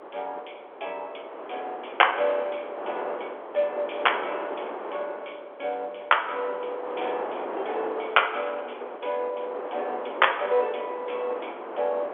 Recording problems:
phone line; 340 Hz to 3.4 kHz, G.711
wind on the microphone; below 1 kHz, SNR 8 dB

